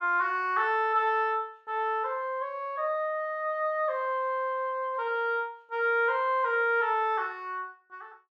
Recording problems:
none

